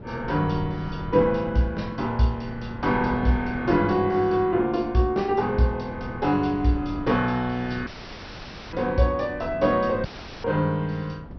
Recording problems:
treble missing; nothing above 5.8 kHz
wind on the microphone; below 280 Hz, SNR 15 dB
audio cutting out; at 8 s for 1 s and at 10 s

